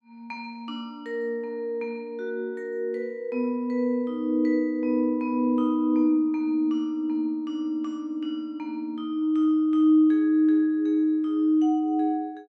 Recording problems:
none

